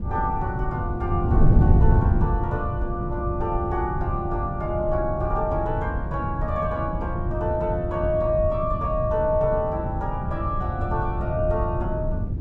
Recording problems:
wind on the microphone; below 140 Hz, SNR -1 dB

